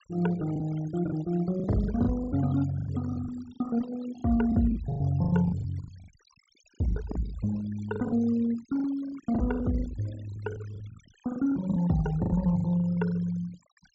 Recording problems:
treble cut off; nothing above 7.6 kHz
noise reduction artefacts; signal-to-artefact ratio 19 dB
lost packets; 15% of the sound replaced, filled with the last packet

